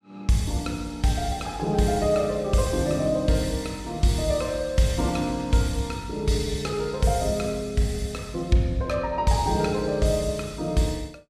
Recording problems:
none

